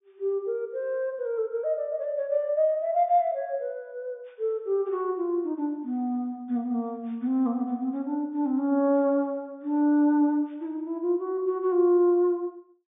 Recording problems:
low-pass filter; nothing above 3.6 kHz

